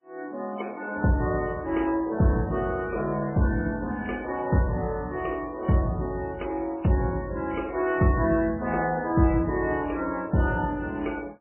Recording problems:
lossy codec; MP3, then AAC, log-spectral distance 3 dB, nothing above 2.9 kHz

